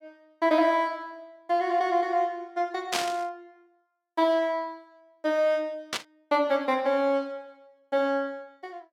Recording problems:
static burst; at 3 s and at 6 s; peak +3 dB vs average level

